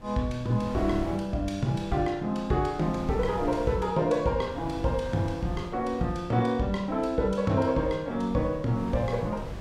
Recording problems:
wind noise; below 330 Hz, SNR 13 dB

